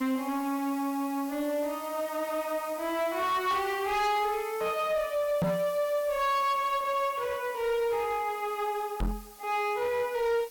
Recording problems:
distorted audio; hard clipping, uneven, signal-to-distortion ratio 10 dB
hiss; slope 0 dB per octave, SNR 18 dB
microphone thump; at 5.5 s and at 9 s; peak +4 dB vs average level

